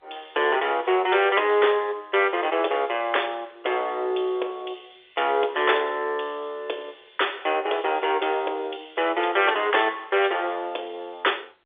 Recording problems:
phone line; 340 Hz to 3.6 kHz, G.711

